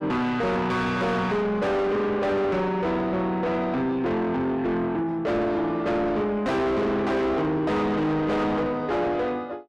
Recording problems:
distorted audio; soft clipping, signal-to-distortion ratio 6 dB

